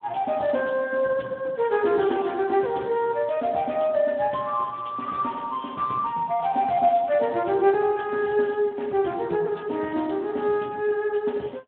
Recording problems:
phone line; 220 Hz to 3.5 kHz, Speex

